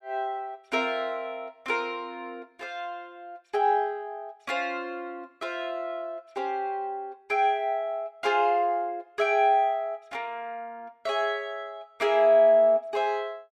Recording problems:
none

